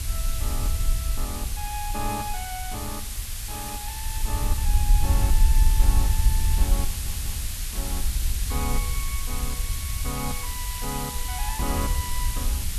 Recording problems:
background hiss; slope +3 dB per octave, SNR -2 dB
wind on the microphone; below 64 Hz, SNR -7 dB
audio stuttering; at 7 s

